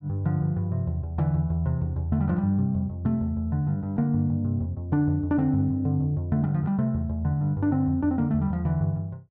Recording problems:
none

